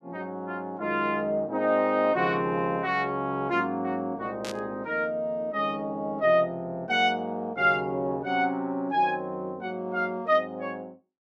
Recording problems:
static burst; at 4.5 s; peak -6 dB vs average level

